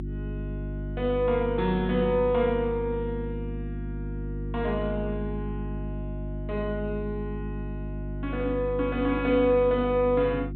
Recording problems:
low-pass filter; nothing above 4 kHz
hum; 50 Hz, harmonics up to 350 Hz, SNR 8 dB

